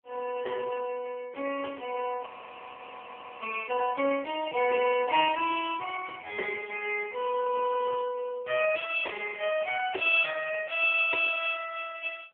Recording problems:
telephone audio; 240 Hz to 3.3 kHz, AMR-NB
frozen audio; at 2 s for 1 s

